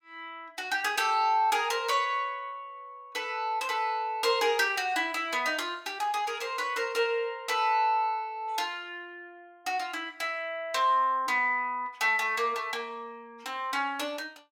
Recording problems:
none

